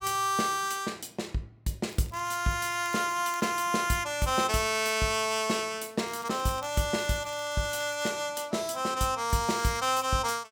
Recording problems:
crackling; from 2 to 4 s, from 6 to 8 s and at 9.5 s; loose cable, SNR 22 dB

